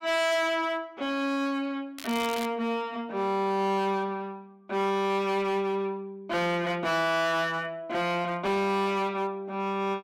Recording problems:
distortion; hard clipping, signal-to-distortion ratio 10 dB
crackle; at 2 s; loose cable, SNR 12 dB

